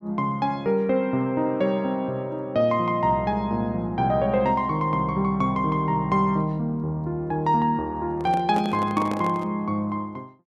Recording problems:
handling noise; from 8 to 9.5 s; peak -4 dB vs average level

